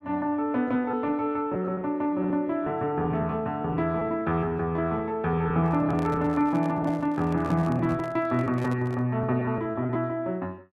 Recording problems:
lost packets; 10% of the sound replaced, filled with repeated pitch periods
handling noise; from 5.5 to 9 s; peak -8 dB vs average level

